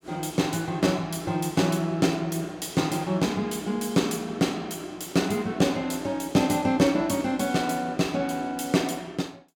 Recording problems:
none

